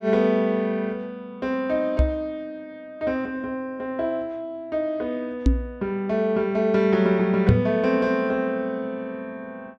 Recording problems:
microphone bump; at 2 s, at 5.5 s and at 7.5 s; peak +9 dB vs average level

